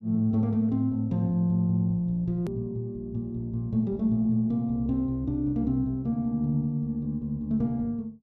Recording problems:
hard cut with a click; at 2.5 s

